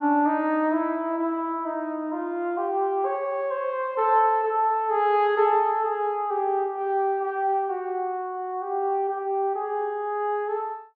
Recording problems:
none

